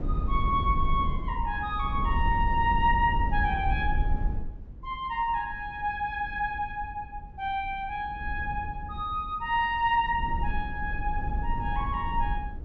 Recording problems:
treble missing; nothing above 8 kHz
wind noise; below 76 Hz, SNR 4 dB

